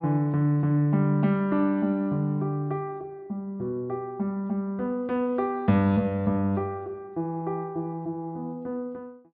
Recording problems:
low-pass filter; nothing above 5.5 kHz

